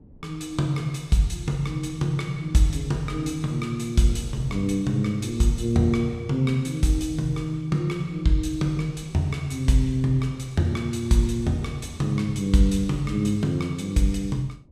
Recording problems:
wind noise; below 250 Hz, SNR 23 dB

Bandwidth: 14.5 kHz